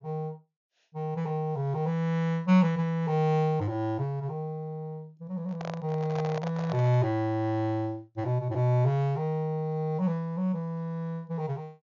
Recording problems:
treble missing; nothing above 6.9 kHz
microphone handling noise; from 5.5 to 7 s; peak -4 dB vs average level

